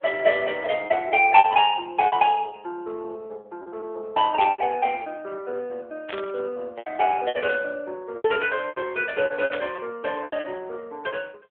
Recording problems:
phone line; 320 Hz to 3.5 kHz, AMR-NB
packet loss; 10% of the sound replaced, filled with repeated pitch periods
burst of static; 4 times, first at 4.5 s; peak -3 dB vs average level

